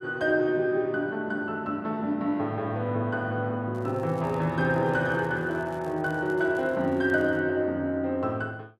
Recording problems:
crackle; from 3.5 to 7.5 s; loose cable, SNR 30 dB

